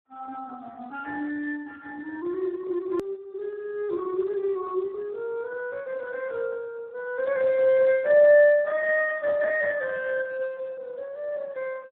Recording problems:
phone line; 280 Hz to 3.1 kHz, Speex
edit click; at 3 s

